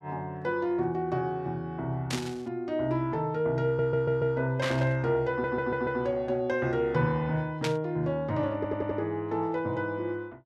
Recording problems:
static burst; at 2 s, at 4.5 s and at 7.5 s; peak 0 dB vs average level
audio stuttering; at 3.5 s, at 5.5 s and at 8.5 s

